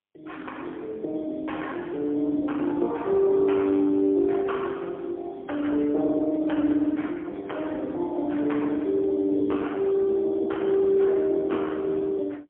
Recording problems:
telephone audio; 240 Hz to 3.4 kHz, AMR-NB, then MP3

